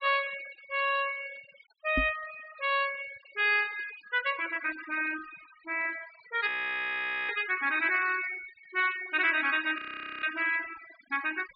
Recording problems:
treble cut off; nothing above 5 kHz
noise reduction artefacts; signal-to-artefact ratio 15 dB
microphone bump; at 2 s; peak +1 dB vs average level
frozen audio; at 6.5 s for 1 s and at 10 s

